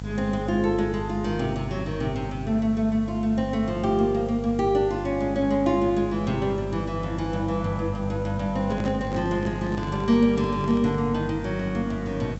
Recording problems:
low-pass filter; nothing above 7.8 kHz
hum; 50 Hz, harmonics up to 550 Hz, SNR 9 dB
background hiss; slope -2 dB per octave, SNR 28 dB
microphone handling noise; from 8.5 to 11 s; peak -5 dB vs average level

